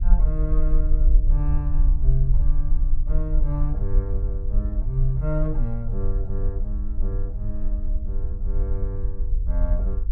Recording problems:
low-frequency rumble; below 46 Hz, SNR -6 dB

